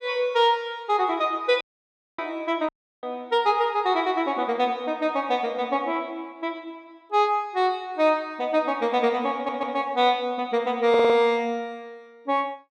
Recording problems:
dropout; at 1.5 s for 0.5 s and at 2.5 s
stutter; at 9.5 s and at 11 s

